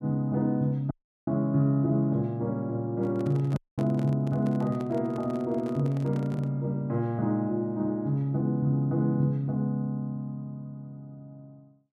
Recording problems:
audio cutting out; at 1 s and at 3.5 s
handling noise; from 3 to 6.5 s; peak -9 dB vs average level

